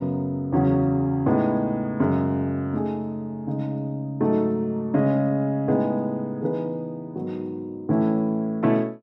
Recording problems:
none

